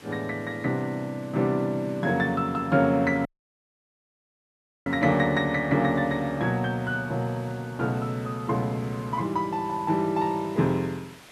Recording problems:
background hiss; SNR 24 dB
dropout; at 3.5 s for 1.5 s

